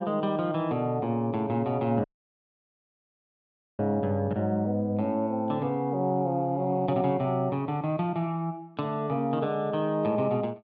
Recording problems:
dropout; at 2 s for 2 s

